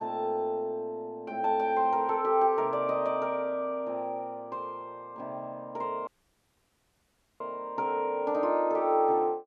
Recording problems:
audio cutting out; at 6 s for 1.5 s

